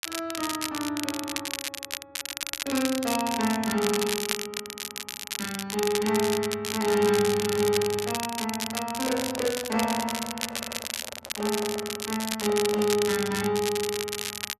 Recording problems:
crackling; vinyl, SNR 4 dB
microphone handling noise; from 9 to 13 s; peak -7 dB vs average level

